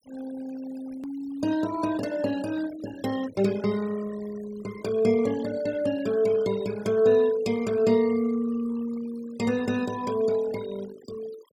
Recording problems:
denoising artefacts; signal-to-artefact ratio 18 dB
hard cut with a click; at 1 s

